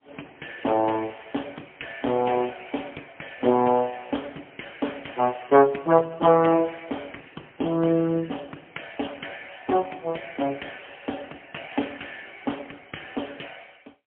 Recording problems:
phone line; 240 Hz to 3.2 kHz, AMR-NB, then MP3

